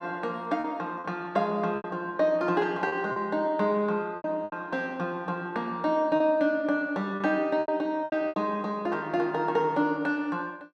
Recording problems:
packet loss; 7% of the sound replaced, filled with repeated pitch periods

